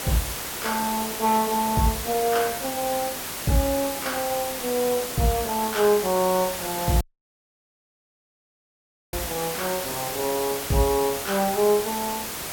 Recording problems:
hiss; slope -2 dB per octave, SNR 5 dB
audio cutting out; at 7 s for 2 s

